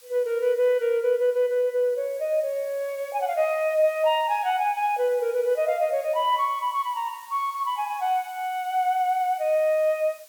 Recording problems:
background hiss; slope +2 dB per octave, SNR 24 dB

